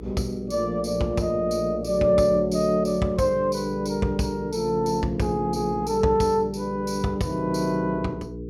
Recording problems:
electrical hum; 60 Hz, harmonics up to 480 Hz, SNR 13 dB

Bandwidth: 16 kHz